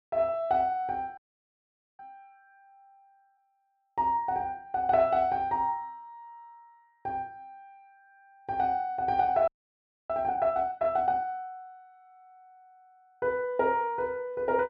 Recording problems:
frozen audio; at 1 s for 1 s and at 9.5 s for 0.5 s

